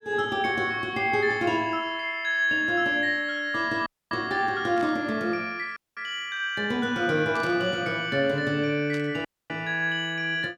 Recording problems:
dropout; at 4 s, at 6 s and at 9.5 s
burst of static; at 5 s, at 7.5 s and at 9 s; peak -12 dB vs average level

